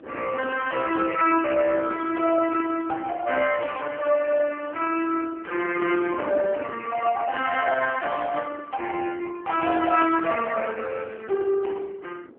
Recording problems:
phone line; 280 Hz to 3.1 kHz, AMR-NB
wind on the microphone; below 480 Hz, SNR 18 dB

